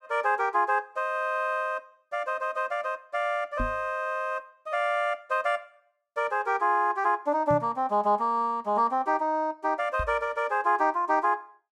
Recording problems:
microphone thump; at 3.5 s, at 7.5 s and at 10 s; peak -2 dB vs average level

